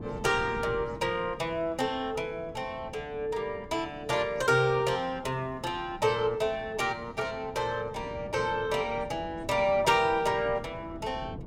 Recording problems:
wind noise; below 310 Hz, SNR 16 dB

